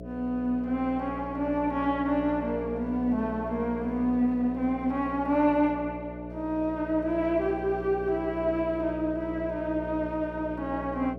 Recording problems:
hum; 60 Hz, harmonics up to 660 Hz, SNR 11 dB

